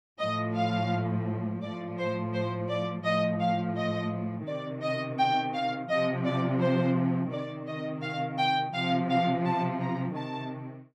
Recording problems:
none

